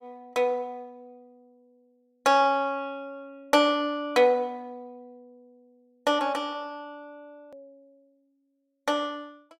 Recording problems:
edit click; at 7.5 s

